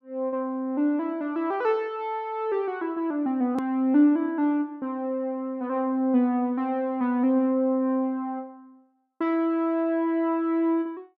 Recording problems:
hard cut with a click; at 3.5 s

